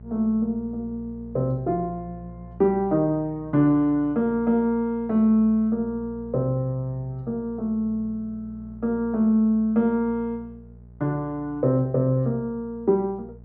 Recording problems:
hum; 60 Hz, harmonics up to 600 Hz, SNR 20 dB

